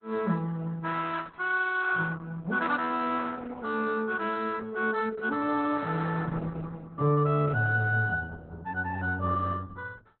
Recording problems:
codec artefacts; Opus, log-spectral distance 4 dB, nothing above 4 kHz

